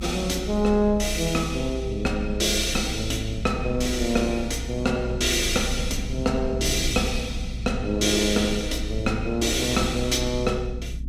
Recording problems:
rumble; below 82 Hz, strongest tone 58 Hz, SNR 8 dB

